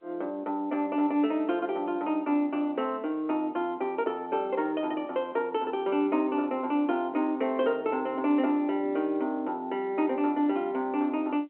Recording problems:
phone line; 220 Hz to 3.2 kHz, G.711

